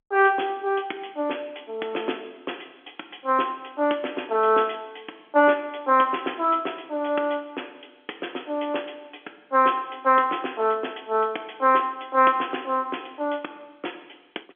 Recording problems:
phone line; 260 Hz to 3.4 kHz, G.711

